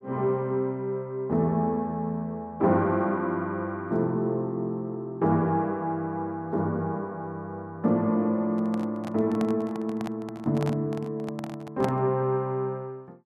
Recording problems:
handling noise; from 8.5 to 12 s; peak -1 dB vs average level

